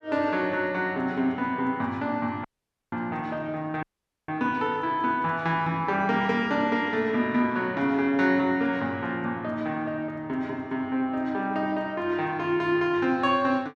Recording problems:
audio cutting out; at 2.5 s and at 4 s

